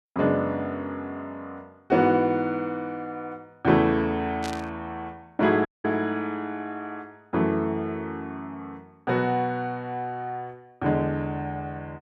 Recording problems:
static burst; at 4.5 s; peak -5 dB vs average level
dropout; at 5.5 s

